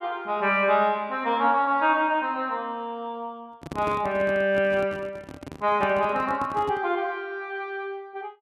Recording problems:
handling noise; from 3.5 to 7 s; peak -5 dB vs average level

